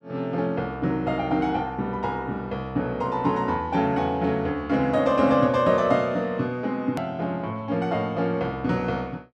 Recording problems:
click at an edit; at 7 s

